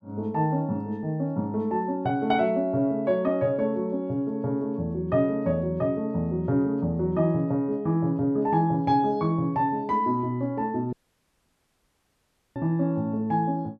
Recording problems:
audio cutting out; at 11 s for 1.5 s

